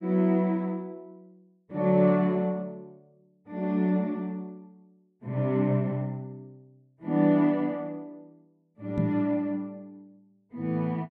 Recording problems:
microphone thump; at 9 s; peak +3 dB vs average level

